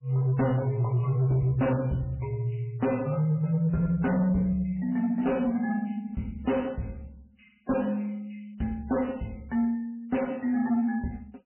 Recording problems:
lossy compression; MP3, log-spectral distance 6 dB, nothing above 3 kHz
distortion; soft clipping, signal-to-distortion ratio 10 dB

